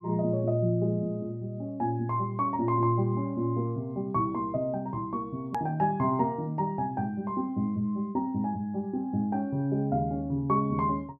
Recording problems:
click at an edit; at 5.5 s

